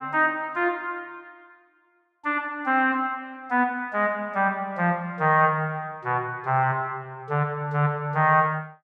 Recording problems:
none

